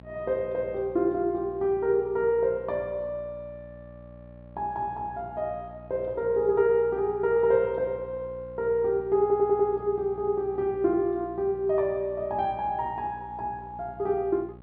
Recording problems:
treble cut off; nothing above 5 kHz
hum; 60 Hz, harmonics up to 1.1 kHz, SNR 20 dB
audio stuttering; at 9 s

